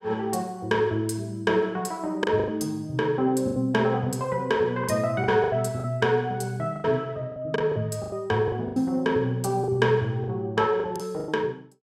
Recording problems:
packet loss; 9% of the sound replaced, filled with the last packet

